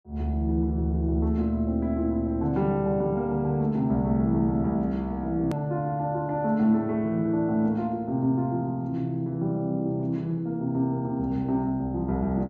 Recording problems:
treble cut off; nothing above 8 kHz
edit click; at 5.5 s

